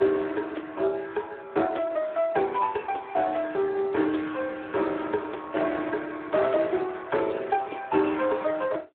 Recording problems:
telephone audio; 260 Hz to 3.6 kHz, Speex

